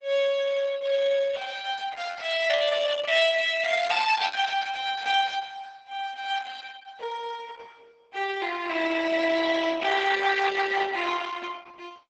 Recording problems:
lossy codec; Opus, log-spectral distance 5 dB, nothing above 8 kHz

